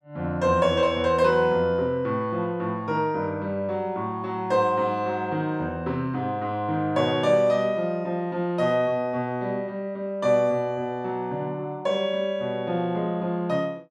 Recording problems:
none

